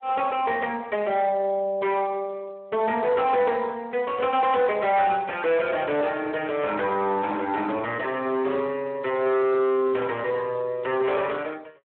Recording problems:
telephone audio; 280 Hz to 2.9 kHz, Speex
distorted audio; hard clipping, uneven, signal-to-distortion ratio 12 dB

